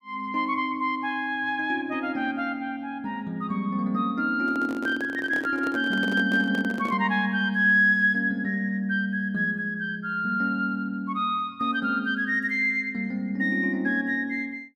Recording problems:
handling noise; from 4.5 to 7 s; peak -7 dB vs average level

